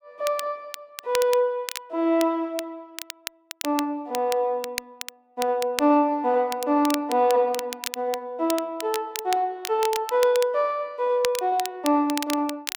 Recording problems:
crackle; vinyl, SNR 11 dB

